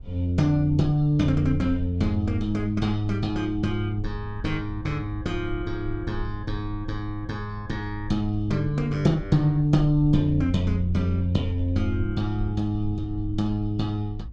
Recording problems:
low-frequency rumble; below 60 Hz, SNR 13 dB

